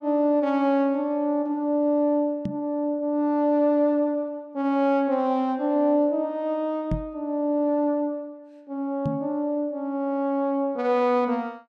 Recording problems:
microphone bump; at 2.5 s, at 7 s and at 9 s; peak +1 dB vs average level

